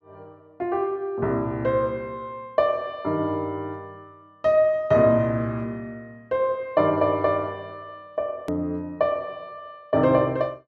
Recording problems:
click at an edit; at 8.5 s

